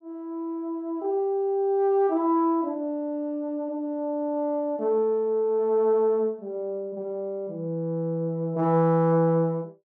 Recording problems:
none

